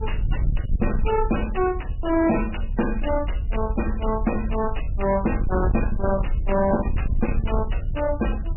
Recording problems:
lossy codec; MP3, log-spectral distance 5 dB, nothing above 2.9 kHz
distortion; soft clipping, signal-to-distortion ratio 11 dB
wind on the microphone; below 72 Hz, SNR 3 dB

